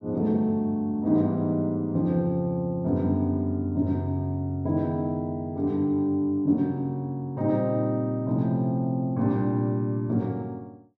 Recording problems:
none

